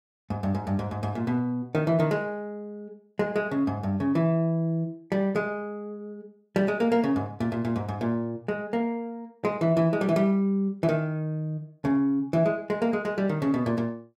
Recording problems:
none

